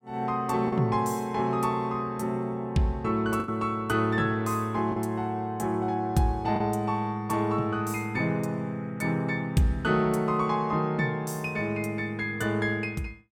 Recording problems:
lost packets; 1.5% of the sound replaced, filled with the last packet

